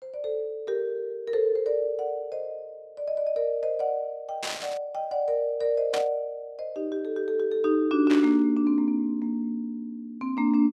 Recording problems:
burst of static; at 4.5 s, at 6 s and at 8 s; peak -1 dB vs average level

